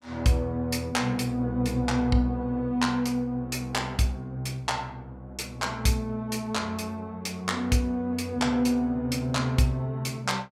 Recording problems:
none

